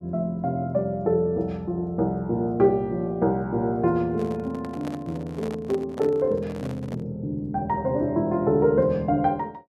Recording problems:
handling noise; from 4 to 7 s; peak -7 dB vs average level

